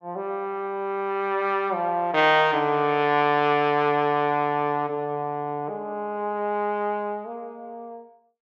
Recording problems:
none

